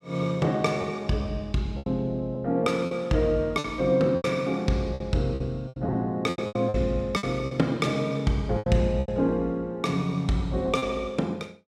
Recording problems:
lost packets; 9% of the sound replaced, filled with repeated pitch periods

